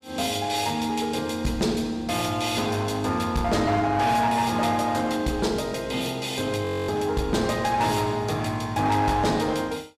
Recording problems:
distorted audio; hard clipping, uneven, signal-to-distortion ratio 10 dB
audio freezing; at 6.5 s

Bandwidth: 15.5 kHz